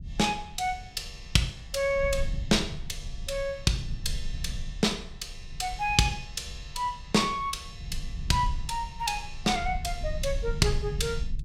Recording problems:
low-frequency rumble; below 68 Hz, SNR 9 dB

